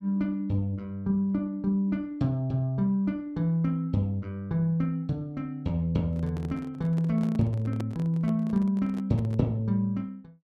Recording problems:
handling noise; from 6 to 9.5 s; peak -5 dB vs average level

